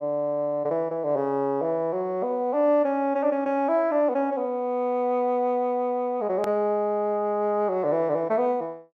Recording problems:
edit click; at 6.5 s

